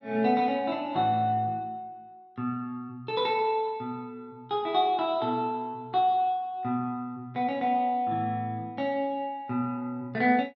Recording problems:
none

